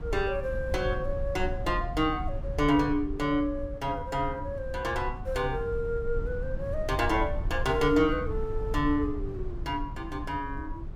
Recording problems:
rumble; below 84 Hz, SNR 7 dB

